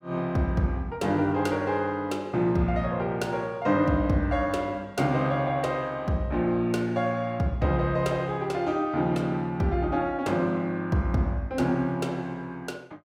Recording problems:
none

